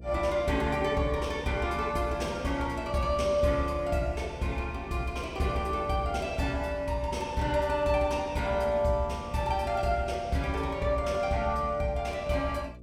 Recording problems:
electrical hum; 60 Hz, harmonics up to 660 Hz, SNR 17 dB

